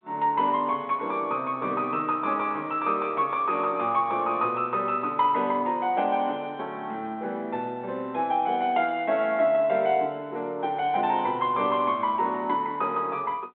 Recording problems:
telephone audio; 260 Hz to 3.7 kHz, G.726

